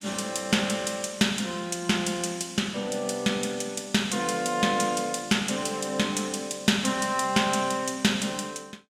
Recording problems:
none

